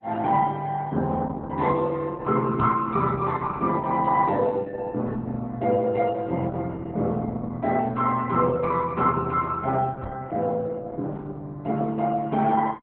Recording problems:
lossy compression; Opus, log-spectral distance 3 dB
knock on the microphone; at 2.5 s and at 10 s; peak +2 dB vs average level

